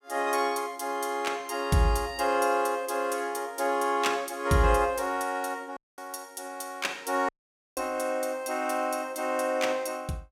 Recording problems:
dropout; at 6 s and at 7.5 s

